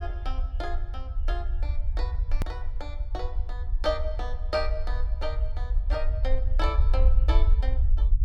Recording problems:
rumble; below 58 Hz, SNR -6 dB
hard cut with a click; at 2.5 s

